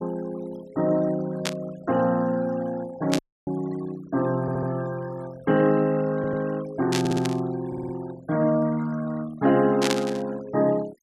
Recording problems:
denoising artefacts; signal-to-artefact ratio 20 dB
burst of static; 4 times, first at 1.5 s; peak +3 dB vs average level
dropout; at 3 s
stutter; 4 times, first at 4.5 s

